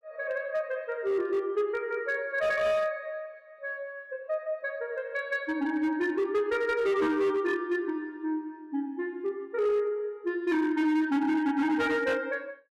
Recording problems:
distortion; hard clipping, signal-to-distortion ratio 10 dB

